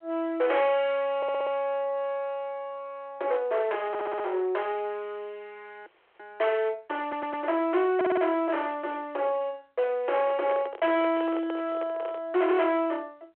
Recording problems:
phone line; 710 Hz to 3.4 kHz, G.726
distortion; hard clipping, uneven, signal-to-distortion ratio 7 dB
stutter; 4 times, first at 1 s
frozen audio; at 6 s
handling noise; from 10 to 12 s; peak -5 dB vs average level

